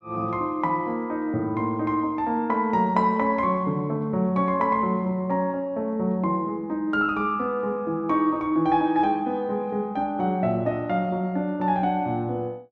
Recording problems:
none

